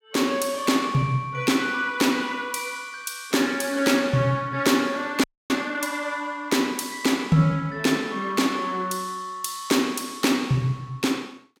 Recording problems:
audio freezing; at 5 s

